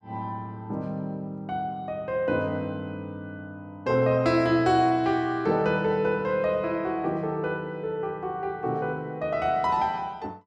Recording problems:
none

